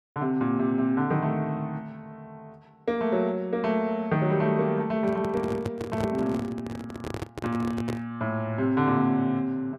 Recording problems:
microphone handling noise; from 5 to 8 s; peak -1 dB vs average level

